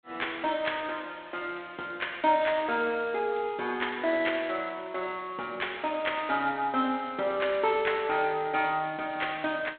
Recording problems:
telephone audio; 280 Hz to 3.7 kHz, G.726

